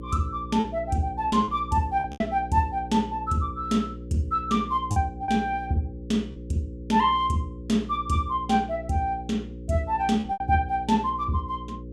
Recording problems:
electrical hum; 60 Hz, harmonics up to 540 Hz, SNR 13 dB
lost packets; 4% of the sound replaced, filled with repeated pitch periods

